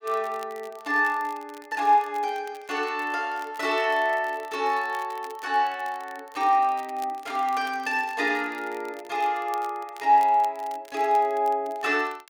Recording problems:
crackling; vinyl, SNR 25 dB

